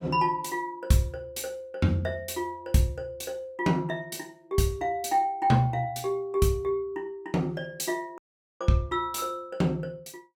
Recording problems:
dropout; at 8 s

